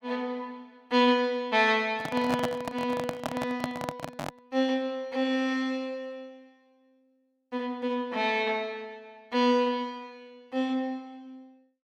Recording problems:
handling noise; from 2 to 4.5 s; peak +2 dB vs average level

